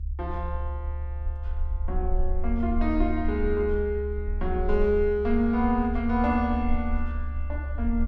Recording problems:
low-frequency rumble; below 70 Hz, SNR 5 dB

